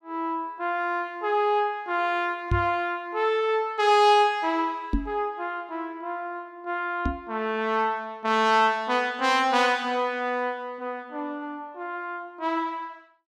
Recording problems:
microphone bump; at 2.5 s, at 5 s and at 7 s; peak +3 dB vs average level

